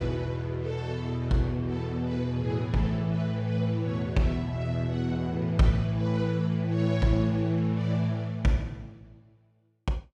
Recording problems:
none

